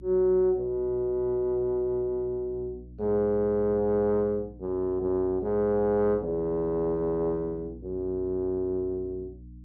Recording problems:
hum; 60 Hz, harmonics up to 300 Hz, SNR 19 dB

